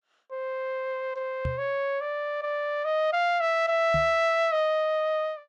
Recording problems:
knock on the microphone; at 1.5 s and at 4 s; peak -2 dB vs average level

